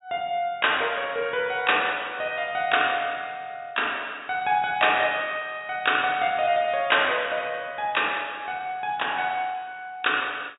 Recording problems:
low-pass filter; nothing above 4 kHz

